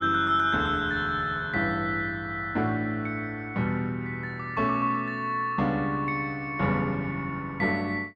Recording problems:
none

